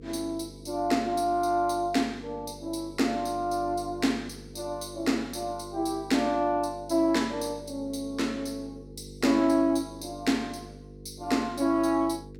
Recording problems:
hum; 50 Hz, harmonics up to 500 Hz, SNR 18 dB

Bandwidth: 16.5 kHz